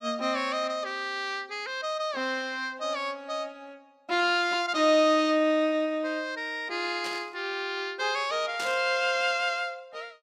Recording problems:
static burst; at 7 s and at 8.5 s; peak -5 dB vs average level

